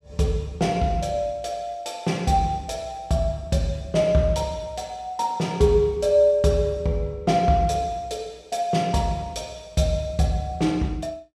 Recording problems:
none

